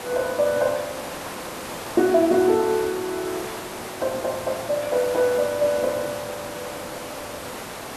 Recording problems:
hiss; slope -5 dB per octave, SNR 10 dB

